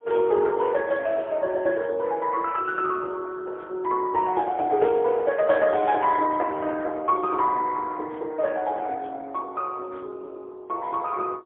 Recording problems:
phone line; 280 Hz to 3.3 kHz, AMR-NB, then MP3

